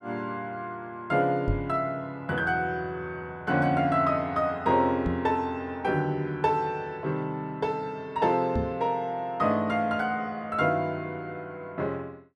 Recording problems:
microphone thump; at 1.5 s, at 5 s and at 8.5 s; peak +3 dB vs average level

